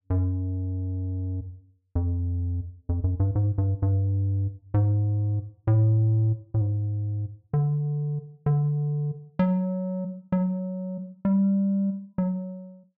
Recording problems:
none

